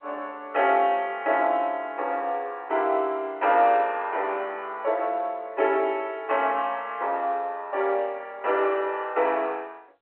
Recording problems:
telephone audio; 340 Hz to 3.3 kHz, G.711

